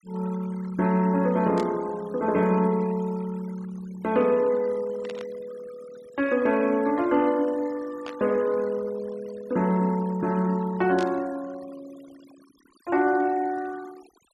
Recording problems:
noise reduction artefacts; signal-to-artefact ratio 22 dB
burst of static; 4 times, first at 1.5 s; peak -10 dB vs average level

